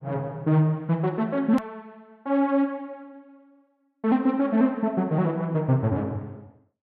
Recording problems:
hard cut with a click; at 1.5 s

